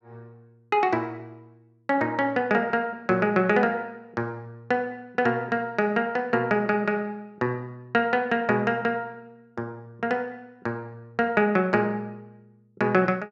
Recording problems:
none

